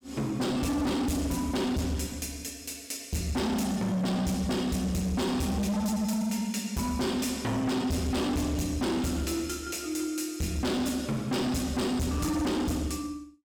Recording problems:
distorted audio; hard clipping, signal-to-distortion ratio 7 dB

